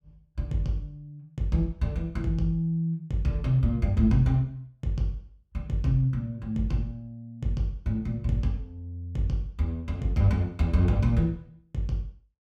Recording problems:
none

